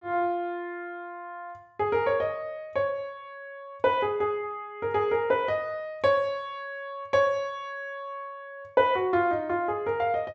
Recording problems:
low-pass filter; nothing above 8 kHz

